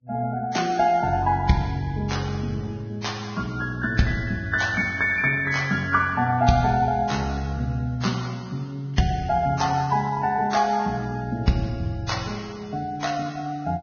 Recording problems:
codec artefacts; Vorbis, log-spectral distance 4 dB, nothing above 6.5 kHz

